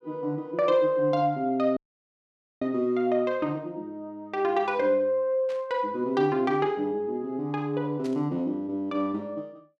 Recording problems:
audio cutting out; at 2 s for 1 s
static burst; at 5.5 s and at 8 s; peak -14 dB vs average level

